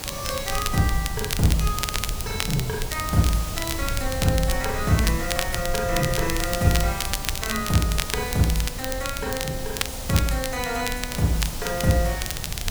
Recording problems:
background hiss; SNR 8 dB
low-frequency rumble; below 92 Hz, SNR 9 dB
crackle; vinyl, SNR 5 dB

